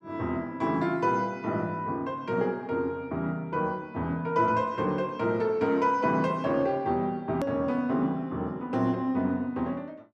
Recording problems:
hard cut with a click; at 7.5 s

